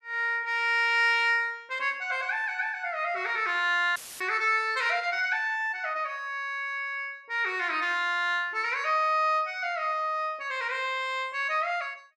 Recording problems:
dropout; at 4 s; filled with static

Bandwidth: 12.5 kHz